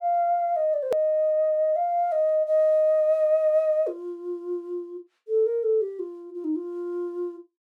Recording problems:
hard cut with a click; at 1 s

